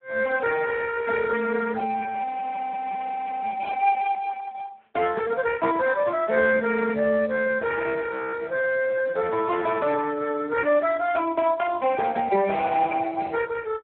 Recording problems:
phone line; 240 Hz to 2 kHz, Speex
frozen audio; at 2.5 s for 1 s and at 8 s

